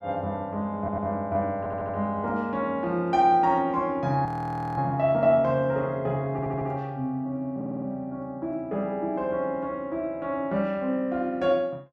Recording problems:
audio stuttering; 4 times, first at 1 s
audio freezing; at 4.5 s for 0.5 s

